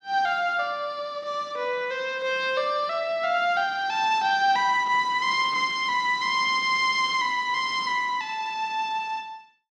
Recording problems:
none

